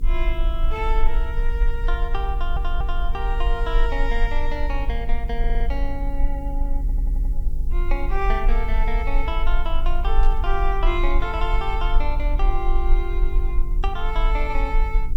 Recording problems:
hum; 50 Hz, harmonics up to 450 Hz, SNR 7 dB
background hiss; SNR 30 dB
rumble; below 38 Hz, strongest tone 18 Hz, SNR -3 dB
audio stuttering; at 2.5 s, at 5.5 s and at 7 s
static burst; at 10 s; peak -11 dB vs average level

